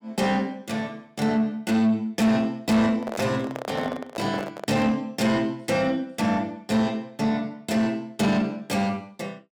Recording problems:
distorted audio; soft clipping, signal-to-distortion ratio 11 dB
microphone handling noise; from 3 to 5 s; peak -3 dB vs average level

